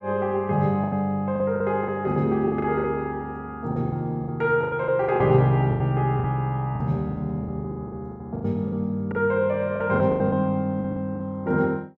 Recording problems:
lost packets; 13% of the sound replaced, filled with the last packet

